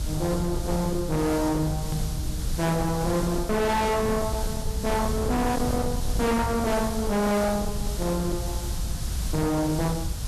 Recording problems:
distortion; hard clipping, signal-to-distortion ratio 6 dB
hiss; SNR 11 dB
rumble; below 140 Hz, SNR 6 dB
click at an edit; at 2 s

